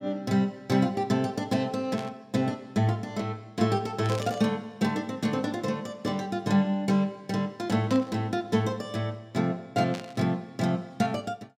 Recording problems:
static burst; 4 times, first at 2 s; peak -7 dB vs average level

